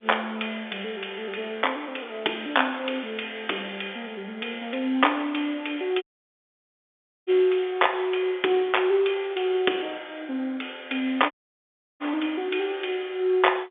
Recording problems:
phone line; 280 Hz to 3.6 kHz, G.711
dropout; at 6 s for 1.5 s and at 11 s for 0.5 s

